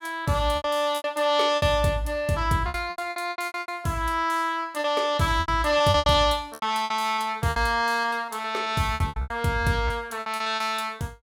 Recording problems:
lost packets; 15% of the sound replaced, filled with repeated pitch periods

